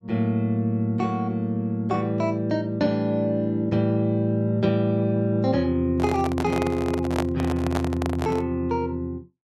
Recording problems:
microphone handling noise; from 6 to 8.5 s; peak +1 dB vs average level

